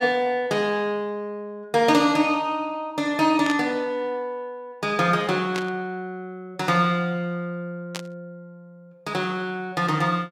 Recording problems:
burst of static; at 3.5 s, at 5.5 s and at 8 s; peak -3 dB vs average level

